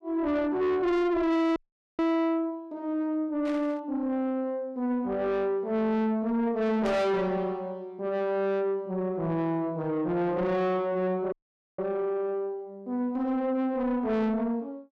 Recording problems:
distortion; soft clipping, signal-to-distortion ratio 7 dB
audio cutting out; at 1.5 s and at 11 s
static burst; at 3.5 s and at 7 s; peak -11 dB vs average level

